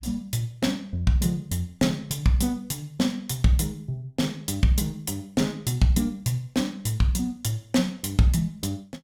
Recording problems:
none

